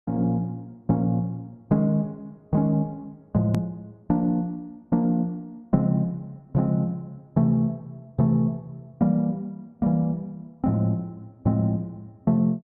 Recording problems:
edit click; at 3.5 s

